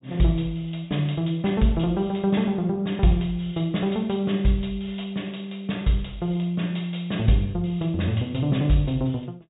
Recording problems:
treble missing; nothing above 4 kHz

